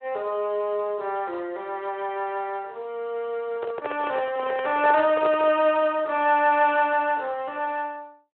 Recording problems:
phone line; 320 Hz to 3.4 kHz, Speex
microphone handling noise; from 3.5 to 5.5 s; peak -2 dB vs average level

